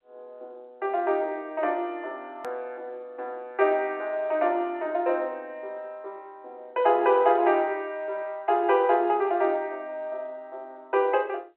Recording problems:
phone line; 300 Hz to 3.2 kHz, G.711
hard cut with a click; at 2.5 s

